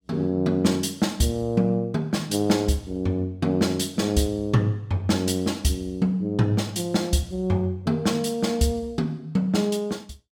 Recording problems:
none

